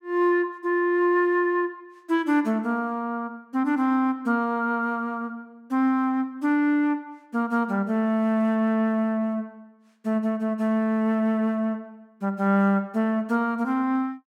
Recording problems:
none

